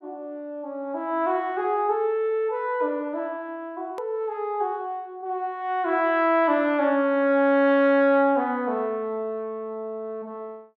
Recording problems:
hard cut with a click; at 4 s

